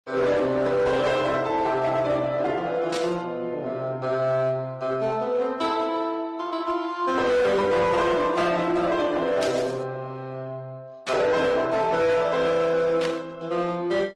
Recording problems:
codec artefacts; MP3, then Opus, log-spectral distance 2 dB, nothing above 11.6 kHz
distortion; hard clipping, signal-to-distortion ratio 12 dB
burst of static; 4 times, first at 3 s; peak -3 dB vs average level

